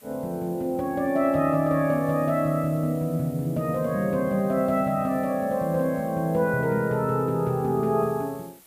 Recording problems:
hiss; slope -2 dB per octave, SNR 25 dB

